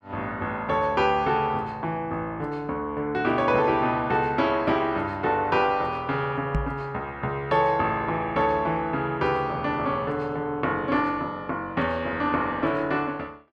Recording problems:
microphone thump; at 6.5 s; peak +3 dB vs average level

